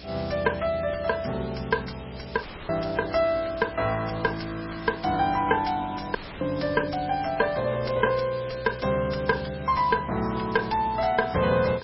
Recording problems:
lossy compression; MP3, log-spectral distance 17 dB, nothing above 5.5 kHz
distorted audio; soft clipping, signal-to-distortion ratio 11 dB
hum; 60 Hz, harmonics up to 660 Hz, SNR 23 dB
hiss; SNR 19 dB
audio cutting out; at 2.5 s and at 6 s

